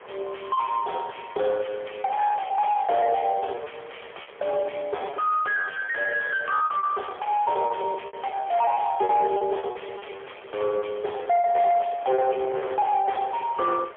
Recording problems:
phone line; 340 Hz to 3.3 kHz, AMR-NB, then MP3
distortion; soft clipping, signal-to-distortion ratio 7 dB
wind noise; below 1.6 kHz, SNR 20 dB
packet loss; 16% of the sound replaced, filled with repeated pitch periods

